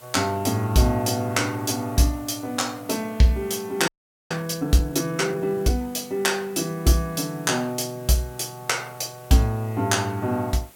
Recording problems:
background hiss; slope -2 dB per octave, SNR 24 dB
audio freezing; at 4 s

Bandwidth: 17 kHz